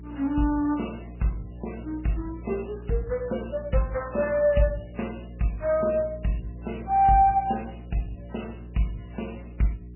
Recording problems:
codec artefacts; MP3, log-spectral distance 6 dB, nothing above 2.9 kHz
electrical hum; 60 Hz, harmonics up to 420 Hz, SNR 15 dB

